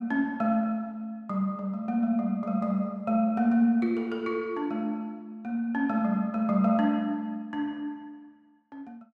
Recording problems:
none

